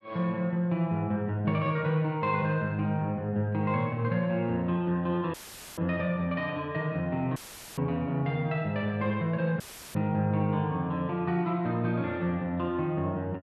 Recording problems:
audio cutting out; at 5.5 s, at 7.5 s and at 9.5 s; filled with static

